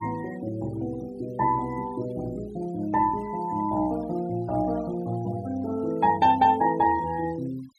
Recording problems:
denoising artefacts; signal-to-artefact ratio 23 dB

